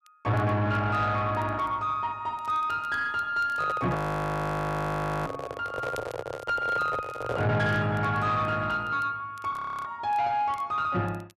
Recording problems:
distorted audio; soft clipping, signal-to-distortion ratio 10 dB
crackling; vinyl, SNR 29 dB
microphone handling noise; from 3.5 to 7.5 s; peak 0 dB vs average level
audio freezing; at 4 s for 1.5 s and at 9.5 s

